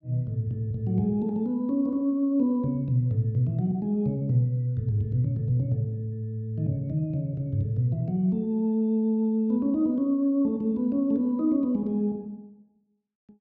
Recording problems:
none

